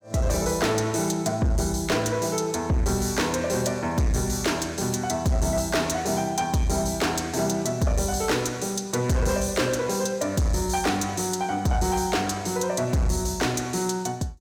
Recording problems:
distortion; soft clipping, signal-to-distortion ratio 11 dB

